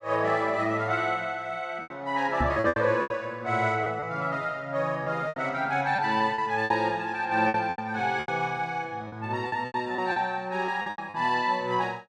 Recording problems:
lost packets; 10% of the sound replaced, filled with repeated pitch periods
microphone bump; at 2.5 s; peak +2 dB vs average level

